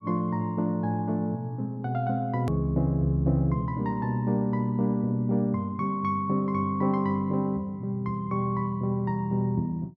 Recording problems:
hard cut with a click; at 2.5 s

